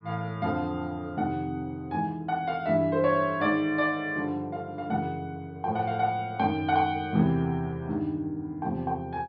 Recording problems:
treble cut off; nothing above 5.5 kHz

